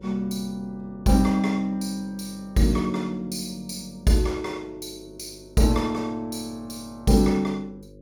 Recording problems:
electrical hum; 50 Hz, harmonics up to 550 Hz, SNR 24 dB

